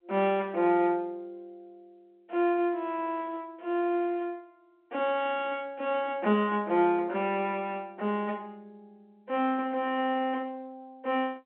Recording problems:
telephone audio; 190 Hz to 3.5 kHz, G.711

